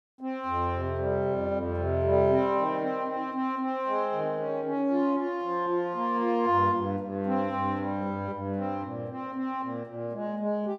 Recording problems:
none

